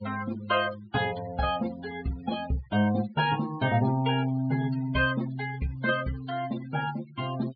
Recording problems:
treble cut off; nothing above 4.9 kHz
denoising artefacts; signal-to-artefact ratio 16 dB

